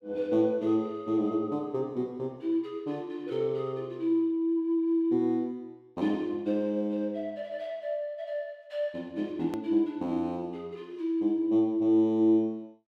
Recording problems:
edit click; at 9.5 s

